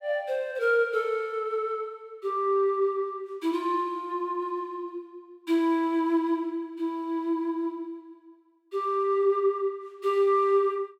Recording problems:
none

